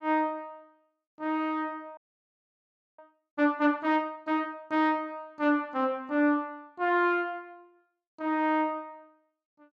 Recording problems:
frozen audio; at 2 s for 1 s

